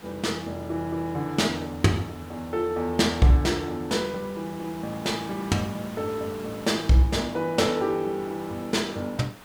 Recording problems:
background hiss; slope -4 dB per octave, SNR 19 dB

